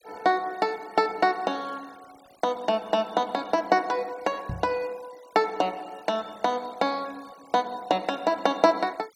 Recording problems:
denoising artefacts; signal-to-artefact ratio 25 dB
microphone bump; at 4.5 s; peak -3 dB vs average level

